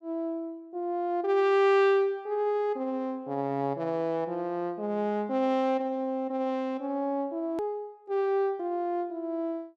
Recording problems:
hard cut with a click; at 7.5 s

